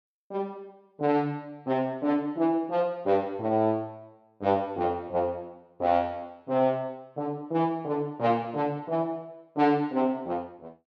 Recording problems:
none

